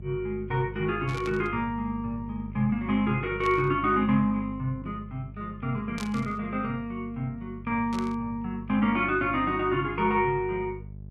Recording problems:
electrical hum; 50 Hz, harmonics up to 450 Hz, SNR 13 dB
burst of static; 4 times, first at 1 s; peak -8 dB vs average level

